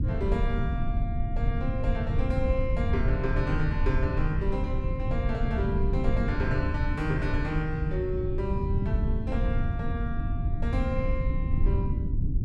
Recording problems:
rumble; below 110 Hz, SNR -3 dB

